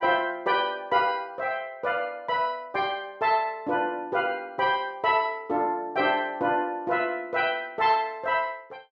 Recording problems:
none

